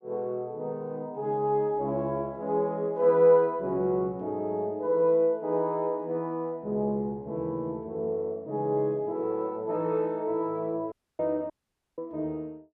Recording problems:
dropout; at 11 s and at 12 s

